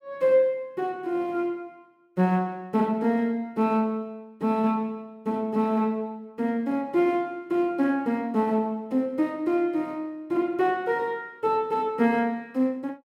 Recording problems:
none

